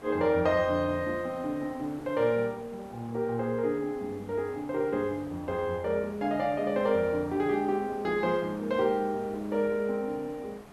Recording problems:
background hiss; SNR 20 dB

